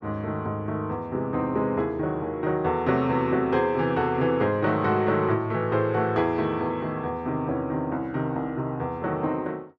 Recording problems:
none

